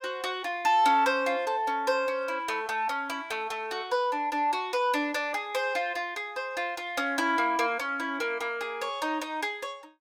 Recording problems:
none

